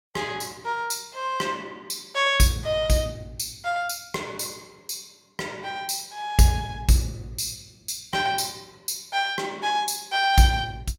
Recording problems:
none

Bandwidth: 16.5 kHz